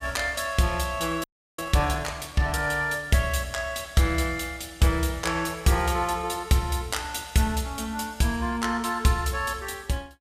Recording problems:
frozen audio; at 1 s

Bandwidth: 15.5 kHz